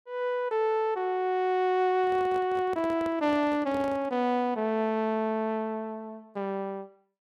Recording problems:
microphone handling noise; from 2 to 4 s; peak -9 dB vs average level

